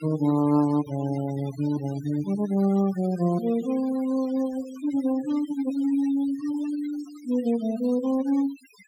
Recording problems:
denoising artefacts; signal-to-artefact ratio 20 dB

